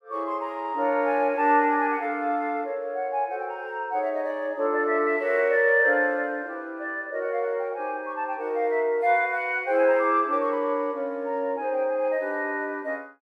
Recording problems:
none

